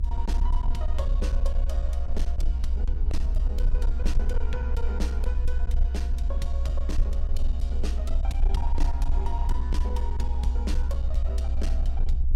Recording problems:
distorted audio; hard clipping, uneven, signal-to-distortion ratio 11 dB
low-frequency rumble; below 62 Hz, SNR -10 dB

